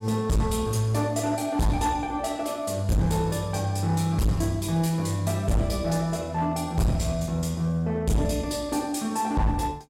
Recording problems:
distorted audio; hard clipping, uneven, signal-to-distortion ratio 6 dB

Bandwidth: 16 kHz